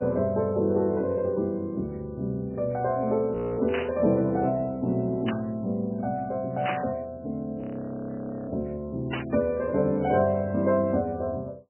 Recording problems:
lossy codec; MP3, log-spectral distance 2 dB, nothing above 3 kHz
frozen audio; at 3.5 s and at 7.5 s for 1 s
static burst; 4 times, first at 3.5 s; peak -1 dB vs average level

